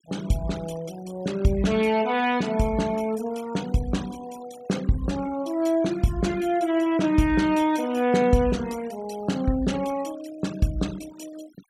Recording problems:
noise reduction artefacts; signal-to-artefact ratio 19 dB

